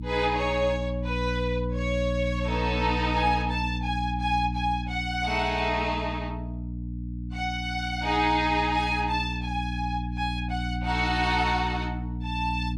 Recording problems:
hum; 60 Hz, harmonics up to 300 Hz, SNR 5 dB

